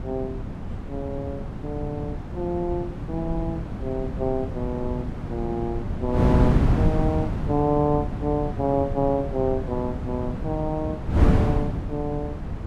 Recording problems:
wind on the microphone; below 230 Hz, SNR 0 dB

